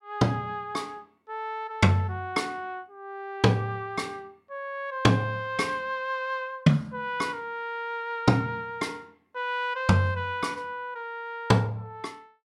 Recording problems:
none

